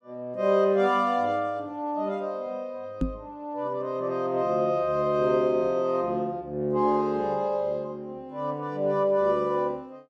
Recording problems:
microphone bump; at 3 s; peak +3 dB vs average level

